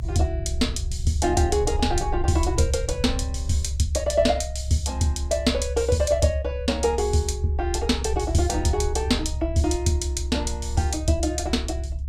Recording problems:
rumble; below 70 Hz, strongest tone 68 Hz, SNR 5 dB

